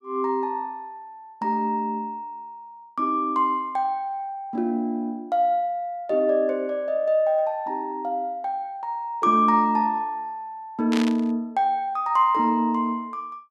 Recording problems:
static burst; at 11 s; peak -2 dB vs average level

